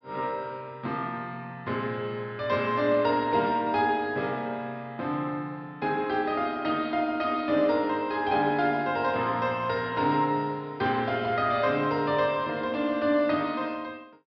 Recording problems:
low-pass filter; nothing above 5.5 kHz

